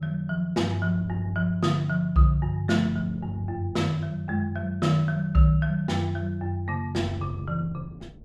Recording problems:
wind on the microphone; below 250 Hz, SNR 21 dB

